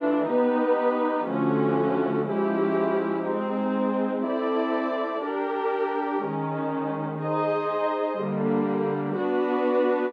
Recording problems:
none

